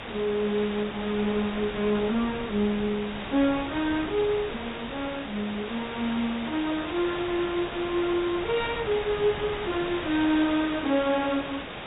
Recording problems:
treble cut off; nothing above 4 kHz
hum; 50 Hz, harmonics up to 450 Hz, SNR 24 dB
hiss; SNR 8 dB
wind on the microphone; below 1.2 kHz, SNR 16 dB

